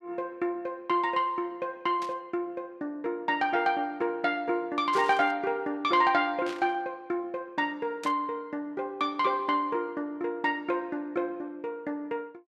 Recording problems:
static burst; 4 times, first at 2 s; peak -7 dB vs average level

